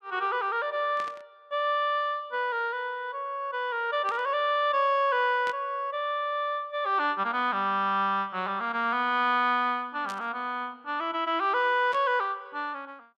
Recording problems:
burst of static; 5 times, first at 1 s; peak -10 dB vs average level

